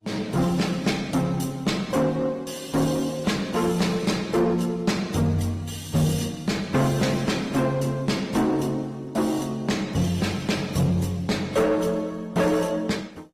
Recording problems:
codec artefacts; Opus, then AAC, log-spectral distance 4 dB, nothing above 15.1 kHz
distorted audio; soft clipping, signal-to-distortion ratio 11 dB

